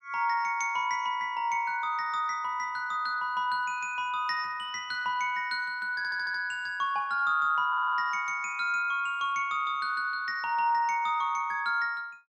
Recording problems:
stutter; at 6 s and at 7.5 s

